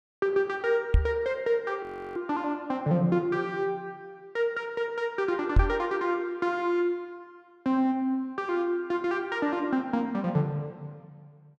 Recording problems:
knock on the microphone; at 1 s and at 5.5 s; peak +9 dB vs average level
frozen audio; at 2 s

